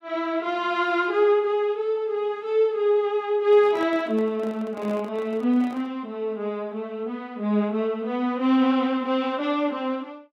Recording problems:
handling noise; from 3.5 to 6 s; peak -10 dB vs average level

